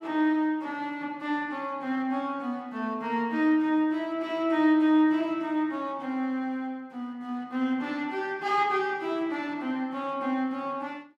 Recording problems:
none

